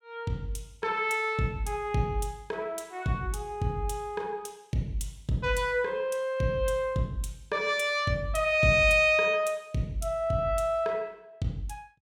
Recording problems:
none

